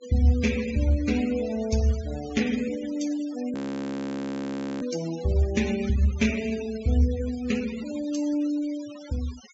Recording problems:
treble missing; nothing above 7.4 kHz
denoising artefacts; signal-to-artefact ratio 16 dB
frozen audio; at 3.5 s for 1.5 s

